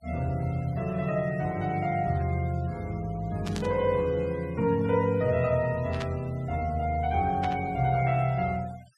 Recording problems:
noise reduction artefacts; signal-to-artefact ratio 24 dB
static burst; at 3.5 s, at 6 s and at 7.5 s; peak -6 dB vs average level

